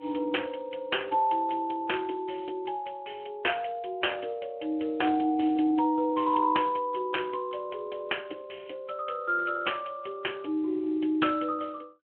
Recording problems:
telephone audio; 260 Hz to 3.2 kHz, Speex

